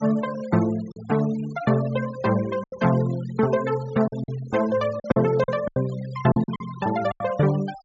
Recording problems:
low-pass filter; nothing above 8 kHz
denoising artefacts; signal-to-artefact ratio 20 dB
lost packets; 8% of the sound replaced, filled with silence

